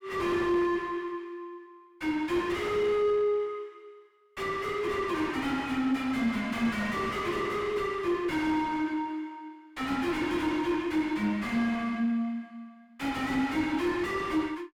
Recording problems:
distortion; soft clipping, signal-to-distortion ratio 5 dB

